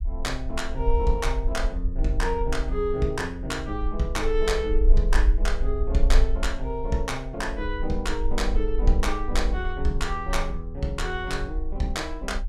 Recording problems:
rumble; below 46 Hz, SNR 1 dB

